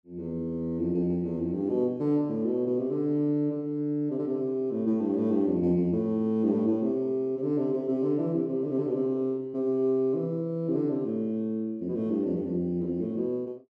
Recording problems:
none

